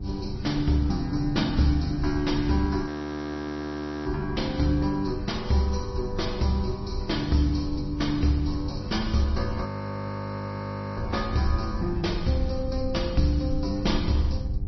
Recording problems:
lossy compression; MP3, log-spectral distance 4 dB, nothing above 5.8 kHz
electrical hum; 50 Hz, harmonics up to 800 Hz, SNR 14 dB
rumble; below 82 Hz, SNR 9 dB
audio freezing; at 3 s for 1 s and at 9.5 s for 1.5 s

